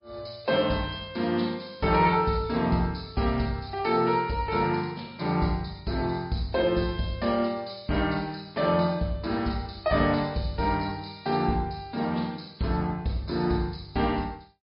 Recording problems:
treble missing; nothing above 5.2 kHz
lossy codec; MP3, log-spectral distance 6 dB

